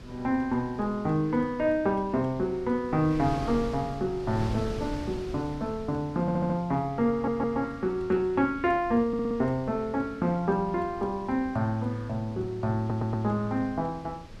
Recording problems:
wind on the microphone; below 350 Hz, SNR 15 dB
stutter; 4 times, first at 6 s

